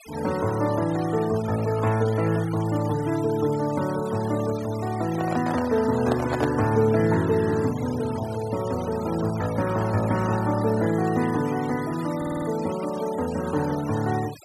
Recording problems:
denoising artefacts; signal-to-artefact ratio 16 dB
handling noise; from 5 to 6.5 s; peak 0 dB vs average level
stutter; at 12 s

